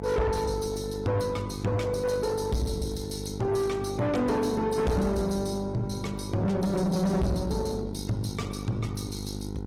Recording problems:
codec artefacts; Opus, log-spectral distance 4 dB, nothing above 18.3 kHz
distorted audio; soft clipping, signal-to-distortion ratio 6 dB
hum; 50 Hz, harmonics up to 1 kHz, SNR 8 dB

